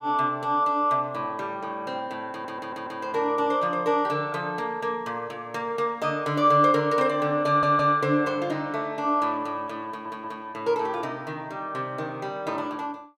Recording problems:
stutter; at 2.5 s, at 7.5 s and at 10 s

